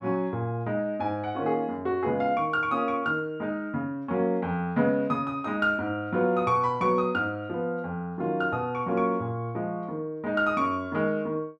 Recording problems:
none

